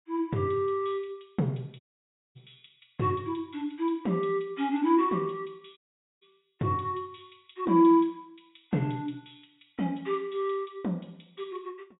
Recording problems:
low-pass filter; nothing above 3.8 kHz
audio cutting out; at 2 s for 0.5 s and at 6 s

